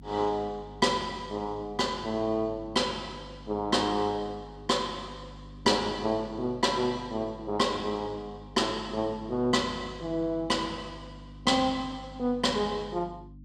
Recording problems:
hum; 50 Hz, harmonics up to 300 Hz, SNR 18 dB

